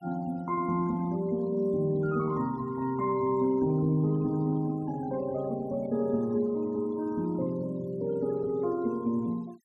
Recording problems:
noise reduction artefacts; signal-to-artefact ratio 27 dB

